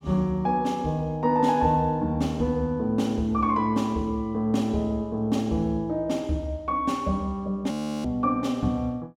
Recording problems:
frozen audio; at 7.5 s

